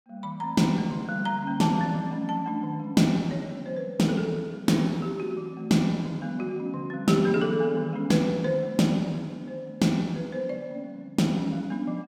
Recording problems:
none

